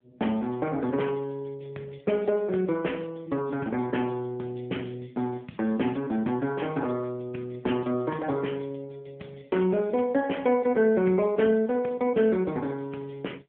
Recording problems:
telephone audio; 260 Hz to 3.2 kHz, AMR-NB

